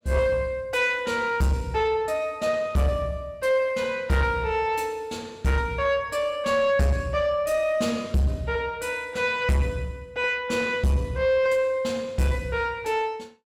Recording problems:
distorted audio; soft clipping, signal-to-distortion ratio 10 dB

